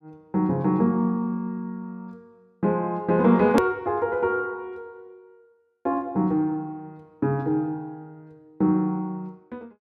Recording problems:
hard cut with a click; at 3.5 s

